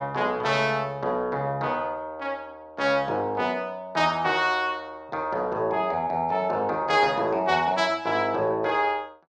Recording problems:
none

